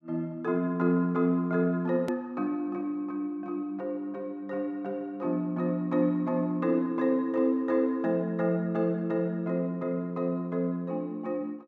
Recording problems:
hard cut with a click; at 2 s

